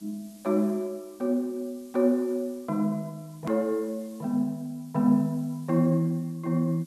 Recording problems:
hiss; SNR 27 dB
edit click; at 3.5 s

